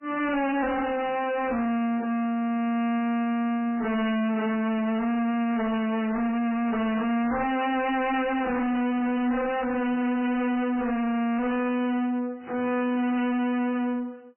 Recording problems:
lossy codec; MP3, log-spectral distance 3 dB, nothing above 3 kHz
distorted audio; soft clipping, signal-to-distortion ratio 5 dB

